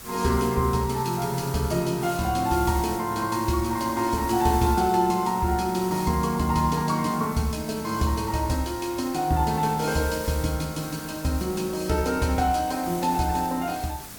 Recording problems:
background hiss; slope -2 dB per octave, SNR 14 dB

